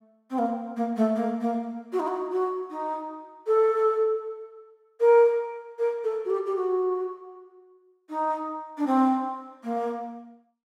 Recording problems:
none

